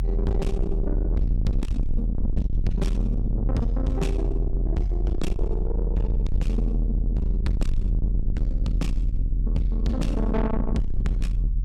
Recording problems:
distortion; soft clipping, signal-to-distortion ratio 6 dB
low-frequency rumble; below 62 Hz, strongest tone 42 Hz, SNR -1 dB

